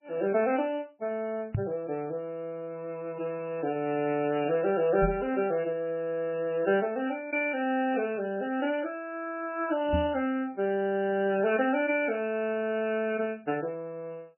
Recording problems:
codec artefacts; MP3, log-spectral distance 2 dB, nothing above 2.4 kHz
microphone bump; at 1.5 s, at 5 s and at 10 s; peak +3 dB vs average level

